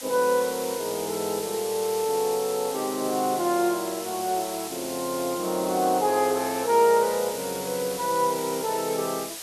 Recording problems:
background hiss; slope +1 dB per octave, SNR 9 dB

